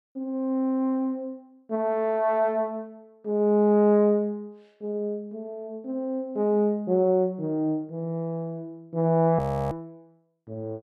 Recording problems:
audio freezing; at 9.5 s

